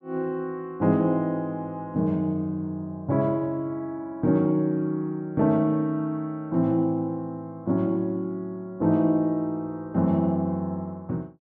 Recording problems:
none

